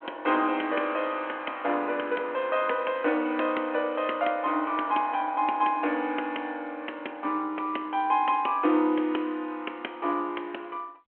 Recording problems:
telephone audio; 260 Hz to 3.3 kHz, G.726

